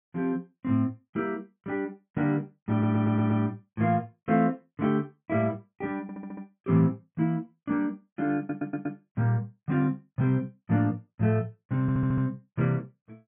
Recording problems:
audio stuttering; 4 times, first at 2.5 s

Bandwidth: 3.5 kHz